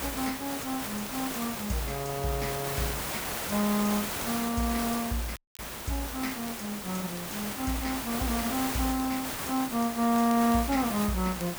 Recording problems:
background hiss; slope -3 dB per octave, SNR 3 dB
crackling; vinyl, SNR 22 dB
dropout; at 5.5 s

